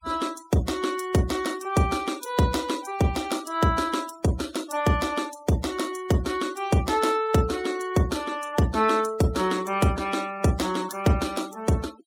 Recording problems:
denoising artefacts; signal-to-artefact ratio 18 dB

